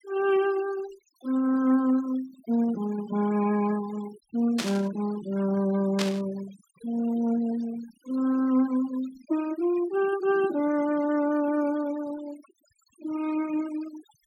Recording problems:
denoising artefacts; signal-to-artefact ratio 17 dB
burst of static; at 4.5 s and at 6 s; peak +1 dB vs average level

